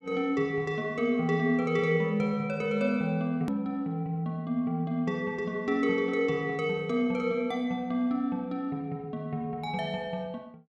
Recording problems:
hard cut with a click; at 3.5 s

